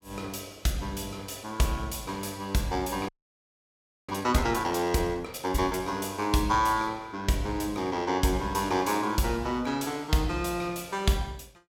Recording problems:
frozen audio; at 3 s for 1 s

